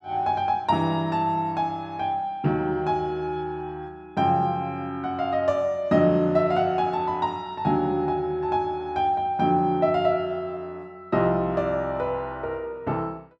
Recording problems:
none

